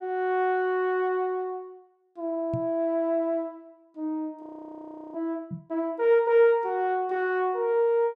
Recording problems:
microphone bump; at 2.5 s and at 5.5 s; peak -2 dB vs average level
frozen audio; at 4.5 s for 0.5 s

